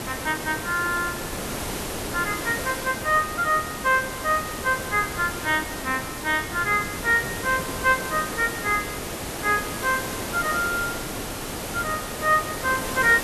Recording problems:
background hiss; slope -4 dB per octave, SNR 6 dB
wind noise; below 390 Hz, SNR 16 dB

